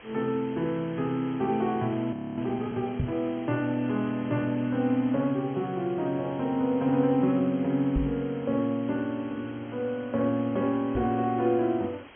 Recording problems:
low-pass filter; nothing above 3.3 kHz
hiss; SNR 21 dB
audio freezing; at 2 s
knock on the microphone; at 3 s, at 8 s and at 11 s; peak +3 dB vs average level

